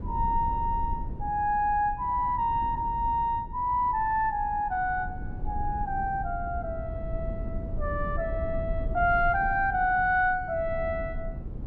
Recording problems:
rumble; below 100 Hz, SNR 10 dB

